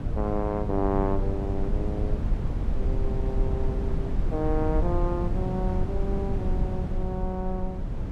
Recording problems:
wind noise; below 98 Hz, SNR -2 dB

